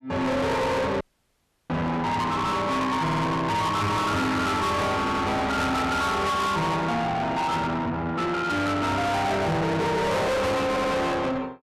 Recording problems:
distortion; soft clipping, signal-to-distortion ratio 6 dB
audio cutting out; at 1 s for 0.5 s
stutter; at 3 s, at 5 s and at 11 s

